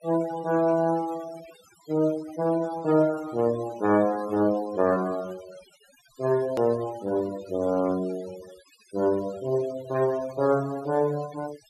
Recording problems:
denoising artefacts; signal-to-artefact ratio 19 dB
edit click; at 6.5 s

